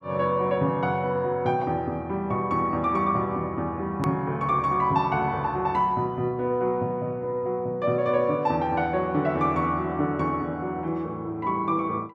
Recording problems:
hard cut with a click; at 4 s

